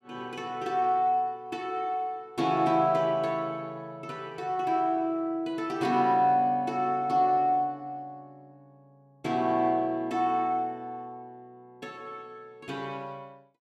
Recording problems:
none

